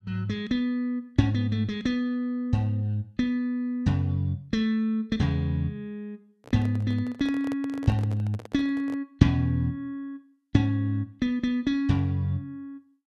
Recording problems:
microphone handling noise; from 6.5 to 9 s; peak -7 dB vs average level

